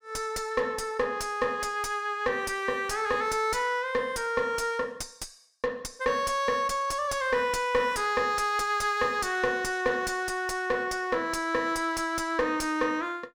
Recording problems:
distorted audio; soft clipping, signal-to-distortion ratio 10 dB

